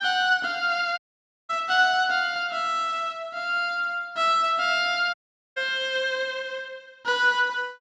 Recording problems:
dropout; at 1 s for 0.5 s and at 5 s

